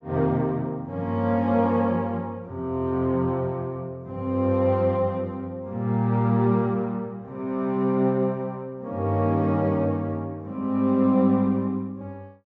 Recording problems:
low-pass filter; nothing above 7.2 kHz

